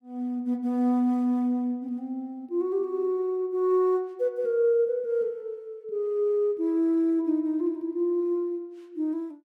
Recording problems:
none

